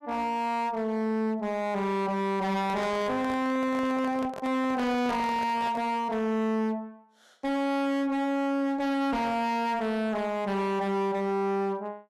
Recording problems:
distortion; hard clipping, uneven, signal-to-distortion ratio 6 dB
microphone handling noise; from 2.5 to 6 s; peak -5 dB vs average level

